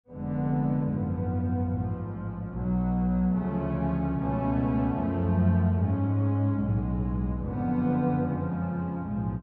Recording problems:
none

